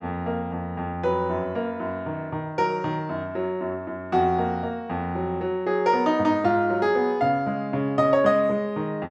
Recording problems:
none

